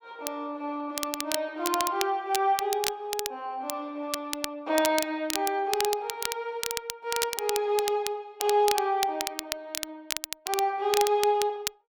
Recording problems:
crackling; vinyl, SNR 5 dB

